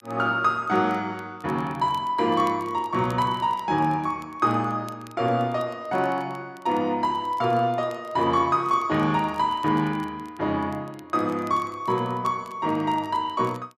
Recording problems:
crackling; vinyl, SNR 29 dB

